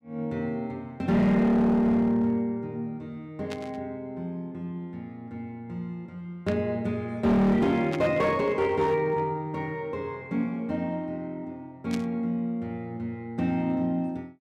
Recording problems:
distorted audio; hard clipping, uneven, signal-to-distortion ratio 11 dB
static burst; 4 times, first at 3.5 s; peak -6 dB vs average level

